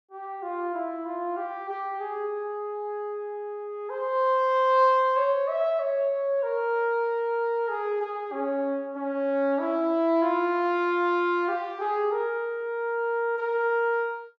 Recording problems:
none

